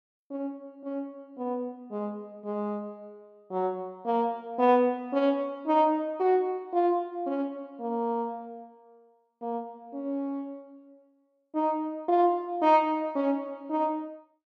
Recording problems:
none

